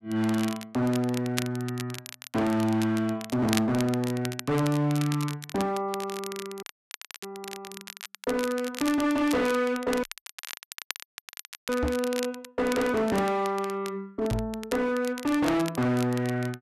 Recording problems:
distorted audio; hard clipping, uneven, signal-to-distortion ratio 7 dB
crackling; vinyl, SNR 12 dB
audio cutting out; at 6.5 s for 0.5 s and at 10 s for 1.5 s
microphone bump; at 12 s and at 14 s; peak +2 dB vs average level

